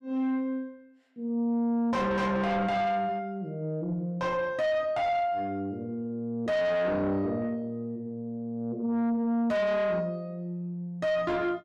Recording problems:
distortion; soft clipping, signal-to-distortion ratio 7 dB

